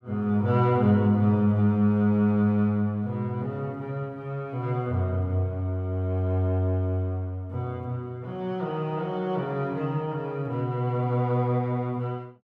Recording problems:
none

